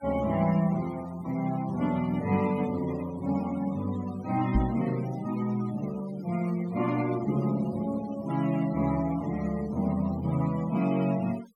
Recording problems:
noise reduction artefacts; signal-to-artefact ratio 18 dB
microphone thump; at 4.5 s; peak +6 dB vs average level

